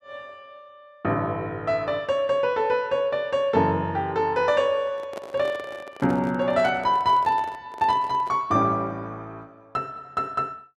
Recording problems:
handling noise; from 5 to 8.5 s; peak -7 dB vs average level

